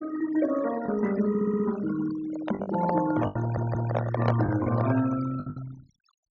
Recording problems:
treble missing; nothing above 6.9 kHz
denoising artefacts; signal-to-artefact ratio 13 dB
lost packets; 6% of the sound replaced, filled with the last packet
stutter; at 1.5 s and at 3.5 s
handling noise; from 2 to 5 s; peak +3 dB vs average level

